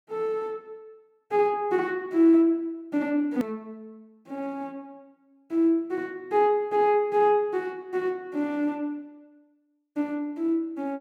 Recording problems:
edit click; at 3.5 s

